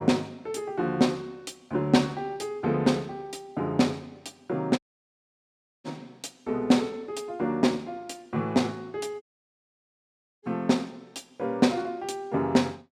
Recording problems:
audio cutting out; at 5 s for 1 s and at 9 s for 1 s

